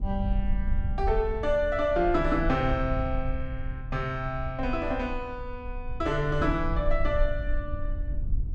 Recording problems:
low-frequency rumble; below 58 Hz, strongest tone 20 Hz, SNR 5 dB

